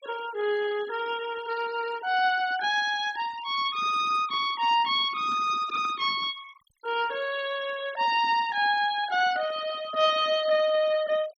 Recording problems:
denoising artefacts; signal-to-artefact ratio 17 dB

